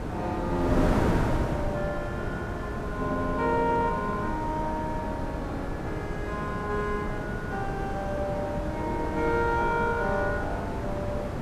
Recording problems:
wind on the microphone; below 560 Hz, SNR 1 dB

